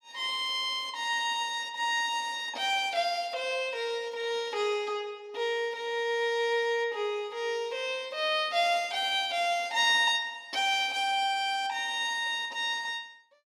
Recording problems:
none

